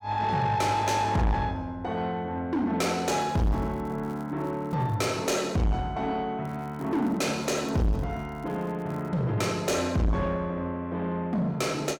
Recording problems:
distorted audio; soft clipping, signal-to-distortion ratio 6 dB
crackle; from 3 to 5 s and from 6.5 to 9 s; loose cable, SNR 30 dB

